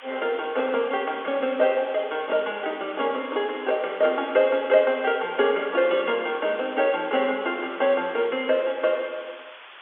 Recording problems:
phone line; 300 Hz to 3.5 kHz, G.711
hiss; SNR 19 dB

